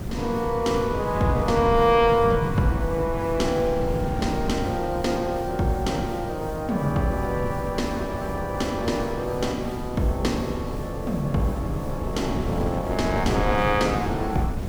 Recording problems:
background hiss; SNR 24 dB
wind noise; below 250 Hz, SNR 6 dB

